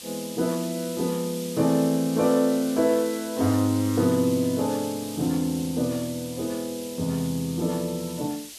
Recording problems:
background hiss; SNR 13 dB

